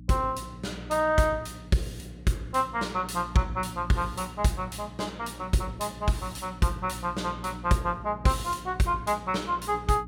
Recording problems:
hum; 60 Hz, harmonics up to 300 Hz, SNR 15 dB

